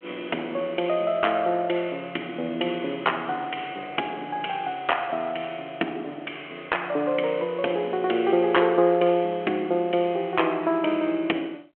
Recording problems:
phone line; 240 Hz to 3.3 kHz, G.726

